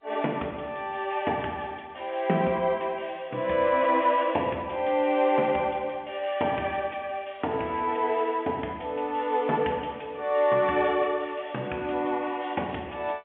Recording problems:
telephone audio; 220 Hz to 3.4 kHz, G.711

